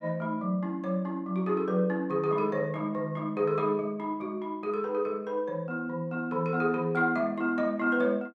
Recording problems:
none

